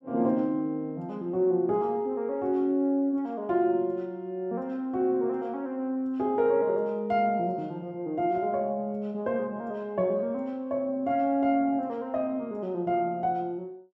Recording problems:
none

